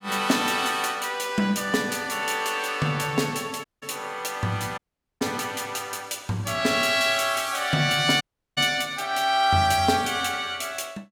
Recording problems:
dropout; at 3.5 s, at 5 s and at 8 s

